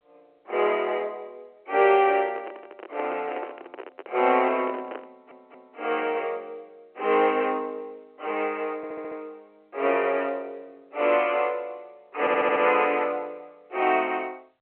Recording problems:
telephone audio; 320 Hz to 3.1 kHz, G.711
microphone handling noise; from 2 to 5.5 s; peak -6 dB vs average level
stutter; at 5 s, at 9 s and at 12 s

